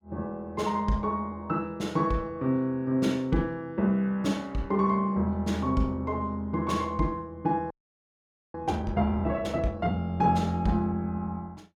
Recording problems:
frozen audio; at 7.5 s for 1 s

